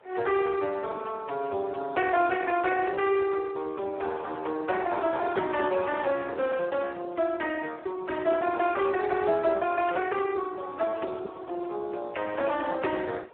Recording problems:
phone line; 320 Hz to 3.4 kHz, Speex
wind noise; below 1.1 kHz, SNR 23 dB

